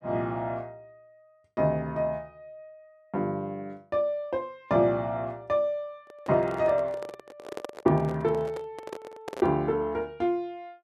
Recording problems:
handling noise; from 6 to 9.5 s; peak -4 dB vs average level

